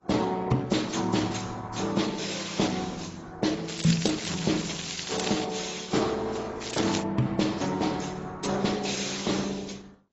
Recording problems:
lossy compression; Opus, then AAC, log-spectral distance 9 dB, nothing above 7.6 kHz
crackle; from 3.5 to 5.5 s and at 6.5 s; loose cable, SNR 5 dB

